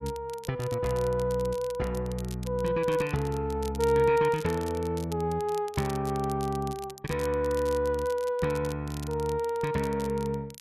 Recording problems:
crackling; vinyl, SNR 18 dB

